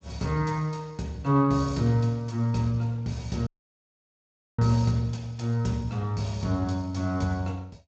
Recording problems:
lossy codec; Speex, log-spectral distance 3 dB, nothing above 7.3 kHz
dropout; at 3.5 s for 1 s

